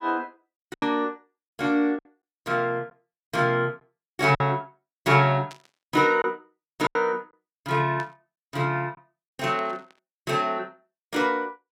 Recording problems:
lost packets; 5% of the sound replaced, filled with silence
static burst; at 5.5 s, at 8 s and at 9.5 s; peak -13 dB vs average level

